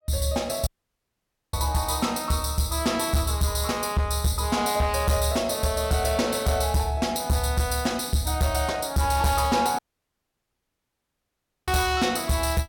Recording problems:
distorted audio; hard clipping, signal-to-distortion ratio 12 dB
audio cutting out; at 0.5 s for 1 s and at 10 s for 2 s

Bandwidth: 17 kHz